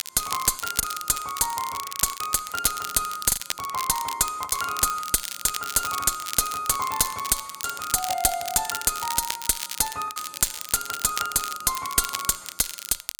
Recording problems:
distortion; soft clipping, signal-to-distortion ratio 10 dB
crackling; vinyl, SNR 8 dB
packet loss; 3% of the sound replaced, filled with the last packet

